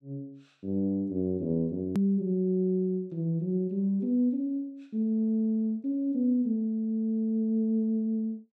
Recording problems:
click at an edit; at 2 s

